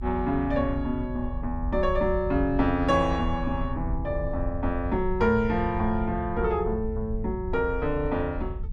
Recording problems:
low-frequency rumble; below 76 Hz, SNR 7 dB

